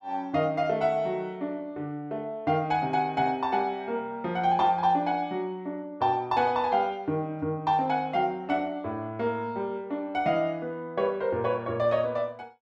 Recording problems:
none

